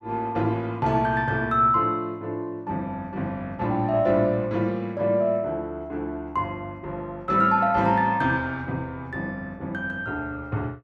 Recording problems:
none

